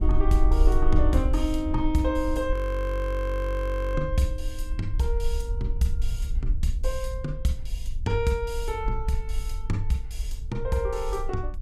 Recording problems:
wind on the microphone; below 52 Hz, SNR 1 dB
audio freezing; at 2.5 s for 1.5 s

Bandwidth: 15 kHz